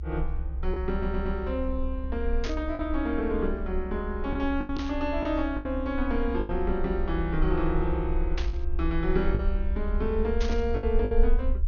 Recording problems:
treble missing; nothing above 6.7 kHz
low-frequency rumble; below 64 Hz, SNR 3 dB
lost packets; 5% of the sound replaced, filled with the last packet
stutter; at 1 s
static burst; 4 times, first at 2.5 s; peak -2 dB vs average level

